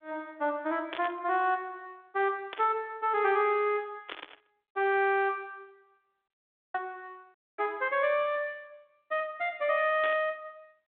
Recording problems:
phone line; 240 Hz to 3.9 kHz, G.726
burst of static; 4 times, first at 1 s; peak -6 dB vs average level
audio cutting out; at 6.5 s and at 7.5 s

